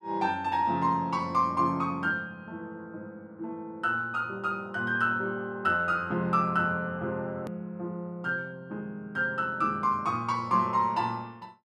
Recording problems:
hard cut with a click; at 7.5 s

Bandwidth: 13 kHz